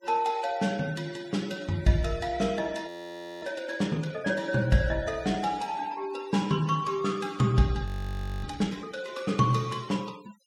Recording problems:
noise reduction artefacts; signal-to-artefact ratio 21 dB
audio freezing; at 3 s for 0.5 s and at 8 s for 0.5 s

